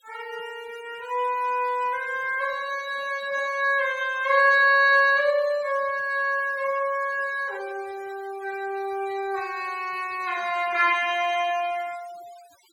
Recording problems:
denoising artefacts; signal-to-artefact ratio 21 dB

